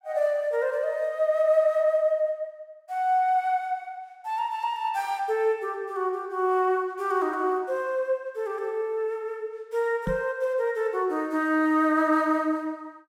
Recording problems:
knock on the microphone; at 10 s; peak -1 dB vs average level

